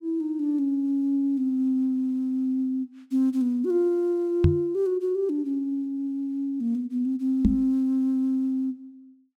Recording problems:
knock on the microphone; at 4.5 s and at 7.5 s; peak +9 dB vs average level

